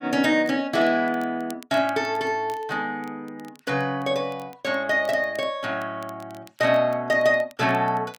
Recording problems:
crackle; vinyl, SNR 28 dB

